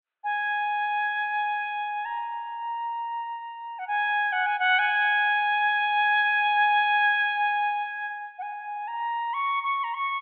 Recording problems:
treble cut off; nothing above 4.3 kHz

